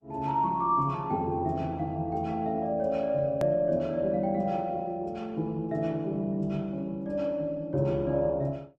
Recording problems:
lossy codec; Opus, log-spectral distance 2 dB, nothing above 13.1 kHz
hard cut with a click; at 3.5 s

